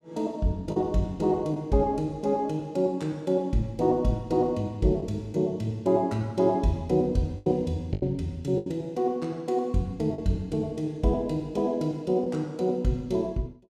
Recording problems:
packet loss; 3% of the sound replaced, filled with the last packet

